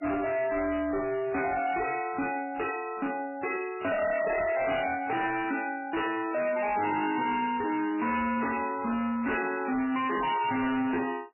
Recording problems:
codec artefacts; MP3, log-spectral distance 5 dB, nothing above 2.9 kHz
distorted audio; hard clipping, signal-to-distortion ratio 5 dB

